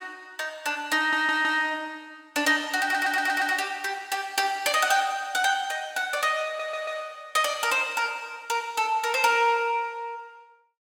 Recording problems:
stutter; at 1 s, at 3 s and at 6.5 s

